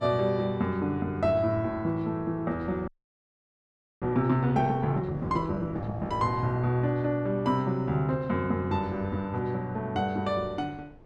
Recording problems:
wind on the microphone; below 470 Hz, SNR 21 dB
audio freezing; at 3 s for 1 s

